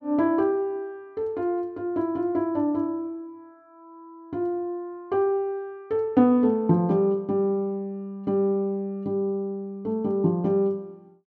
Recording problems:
none

